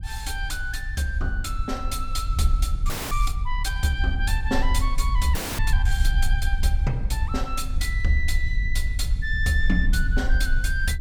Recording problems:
wind on the microphone; below 58 Hz, SNR -1 dB
audio freezing; at 3 s and at 5.5 s

